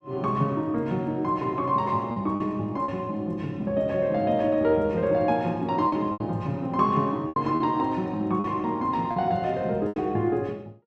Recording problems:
lost packets; 5% of the sound replaced, filled with repeated pitch periods

